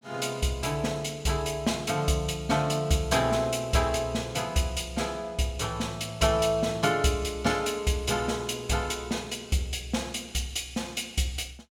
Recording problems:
none

